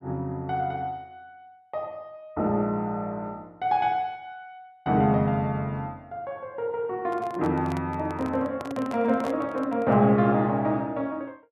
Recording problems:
microphone handling noise; from 7 to 10 s; peak -6 dB vs average level

